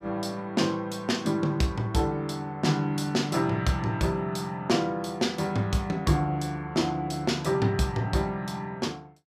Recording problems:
none

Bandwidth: 15.5 kHz